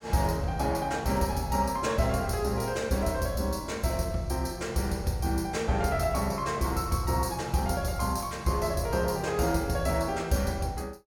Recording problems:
none

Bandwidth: 17 kHz